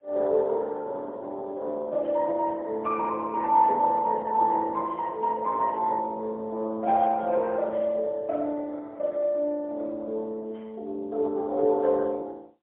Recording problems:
phone line; 320 Hz to 2.3 kHz, AMR-NB, then MP3

